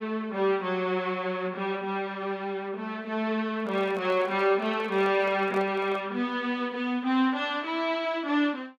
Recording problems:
handling noise; from 3.5 to 6 s; peak -9 dB vs average level

